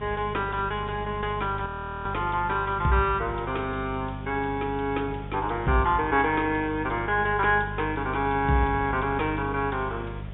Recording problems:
treble missing; nothing above 3.6 kHz
mains hum; 50 Hz, harmonics up to 450 Hz, SNR 11 dB
background hiss; SNR 29 dB
wind on the microphone; below 690 Hz, SNR 19 dB
audio freezing; at 1.5 s

